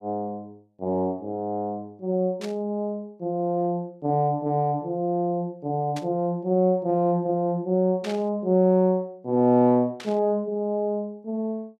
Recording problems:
burst of static; 4 times, first at 2.5 s; peak -8 dB vs average level

